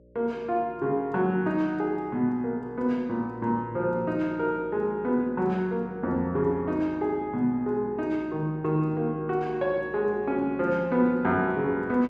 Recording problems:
hum; 60 Hz, harmonics up to 600 Hz, SNR 26 dB

